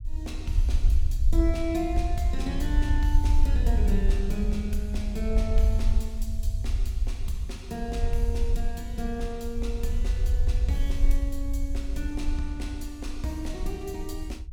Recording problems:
rumble; below 62 Hz, SNR -5 dB

